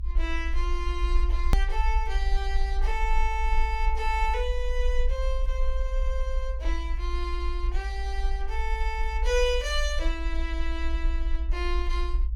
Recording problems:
rumble; below 56 Hz, strongest tone 22 Hz, SNR -2 dB
edit click; at 1.5 s

